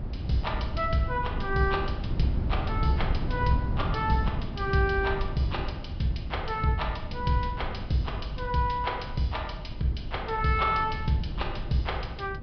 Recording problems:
treble missing; nothing above 5.5 kHz
wind on the microphone; below 140 Hz, SNR 5 dB

